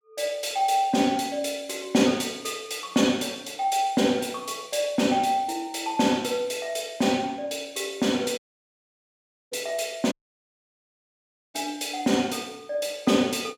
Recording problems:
audio cutting out; at 8.5 s for 1 s and at 10 s for 1.5 s

